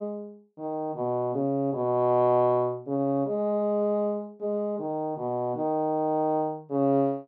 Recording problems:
none

